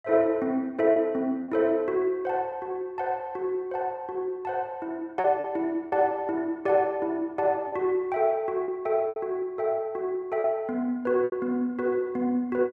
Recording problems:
lost packets; 4% of the sound replaced, filled with repeated pitch periods

